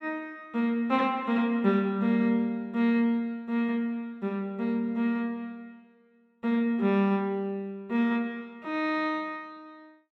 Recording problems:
none

